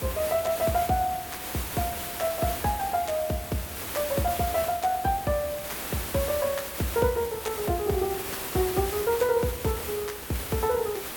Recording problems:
hiss; slope -3 dB per octave, SNR 6 dB

